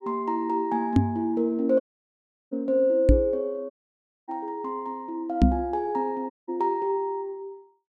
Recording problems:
microphone bump; at 1 s, at 3 s and at 5.5 s; peak +11 dB vs average level
audio cutting out; at 2 s for 0.5 s, at 3.5 s for 0.5 s and at 6.5 s

